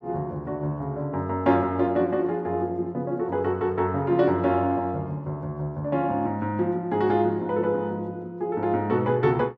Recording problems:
none

